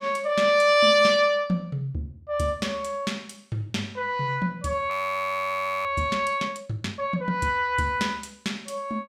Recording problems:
audio freezing; at 5 s for 1 s

